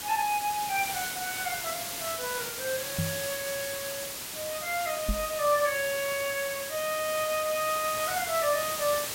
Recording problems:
hiss; slope 0 dB per octave, SNR 3 dB
microphone bump; at 3 s and at 5 s; peak +3 dB vs average level

